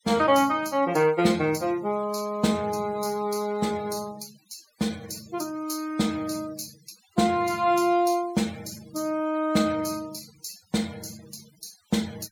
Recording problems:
noise reduction artefacts; signal-to-artefact ratio 21 dB

